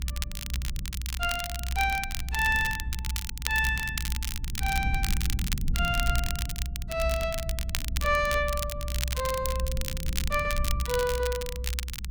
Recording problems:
low-frequency rumble; below 66 Hz, SNR 4 dB
crackling; vinyl, SNR 6 dB

